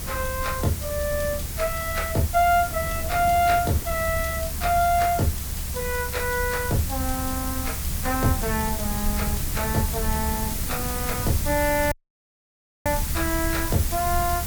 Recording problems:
background hiss; slope -1 dB per octave, SNR 5 dB
low-frequency rumble; below 96 Hz, SNR 7 dB
wind on the microphone; below 290 Hz, SNR 15 dB
audio cutting out; at 12 s for 1 s

